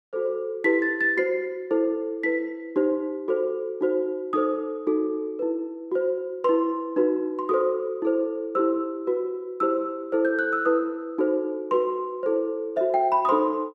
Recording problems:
none

